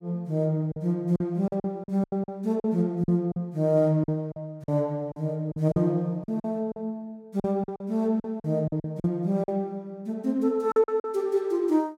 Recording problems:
packet loss; 11% of the sound replaced, filled with silence

